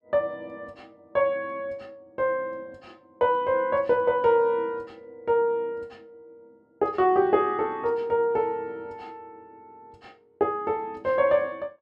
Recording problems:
none

